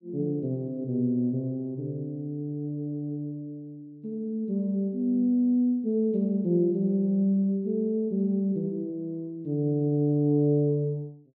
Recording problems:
none

